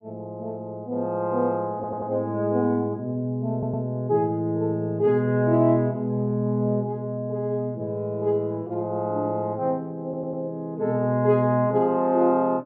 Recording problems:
stutter; at 2 s, at 3.5 s and at 10 s

